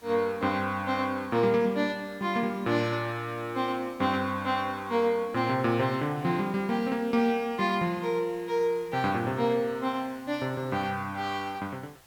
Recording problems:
background hiss; slope -2 dB per octave, SNR 26 dB

